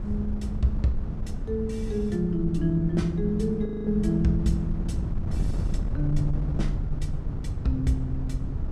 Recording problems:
wind on the microphone; below 110 Hz, SNR 4 dB
audio freezing; at 3.5 s

